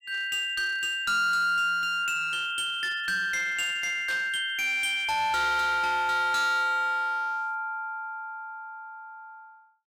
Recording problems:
distorted audio; hard clipping, uneven, signal-to-distortion ratio 11 dB
burst of static; at 4 s; peak -9 dB vs average level

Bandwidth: 16 kHz